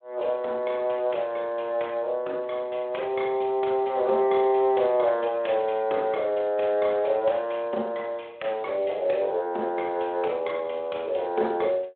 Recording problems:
phone line; 300 Hz to 3.6 kHz, Speex

